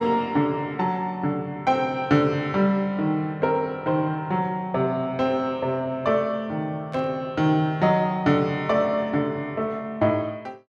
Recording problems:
burst of static; at 7 s; peak -16 dB vs average level

